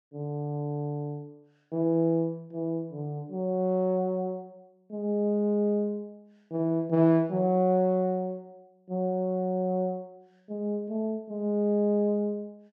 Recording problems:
none

